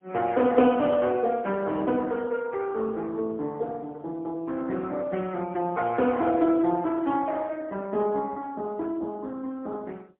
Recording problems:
phone line; 150 Hz to 3.6 kHz, AMR-NB, then MP3

